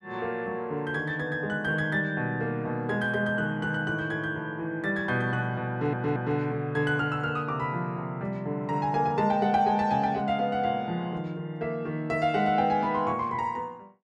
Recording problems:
audio stuttering; at 5.5 s

